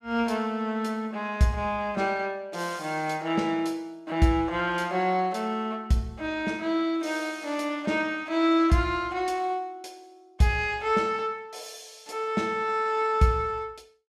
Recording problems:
none

